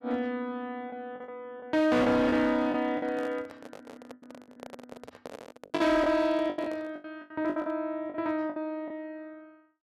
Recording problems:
distorted audio; hard clipping, uneven, signal-to-distortion ratio 11 dB
packet loss; 11% of the sound replaced, filled with the last packet
handling noise; from 3 to 7 s; peak -8 dB vs average level

